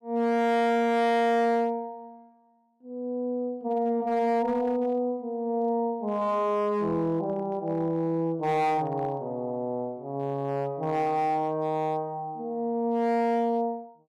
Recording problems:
distorted audio; hard clipping, signal-to-distortion ratio 10 dB

